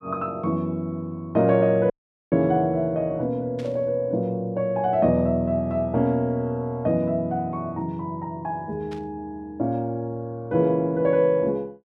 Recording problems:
dropout; at 2 s
burst of static; at 3.5 s and at 9 s; peak -15 dB vs average level

